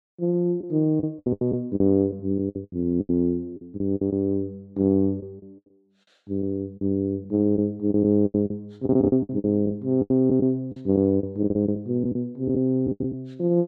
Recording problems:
lost packets; 13% of the sound replaced, filled with the last packet

